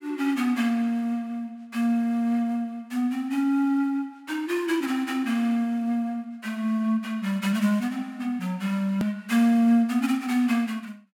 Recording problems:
click at an edit; at 9 s

